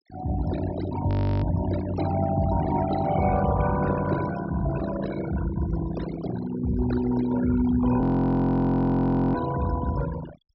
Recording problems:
treble cut off; nothing above 5.5 kHz
denoising artefacts; signal-to-artefact ratio 11 dB
audio freezing; at 1 s and at 8 s for 1.5 s

